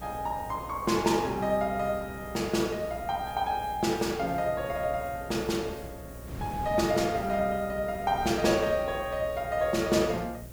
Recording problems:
mains hum; 60 Hz, harmonics up to 660 Hz, SNR 18 dB
background hiss; slope +3 dB per octave, SNR 22 dB
wind noise; below 300 Hz, SNR 17 dB

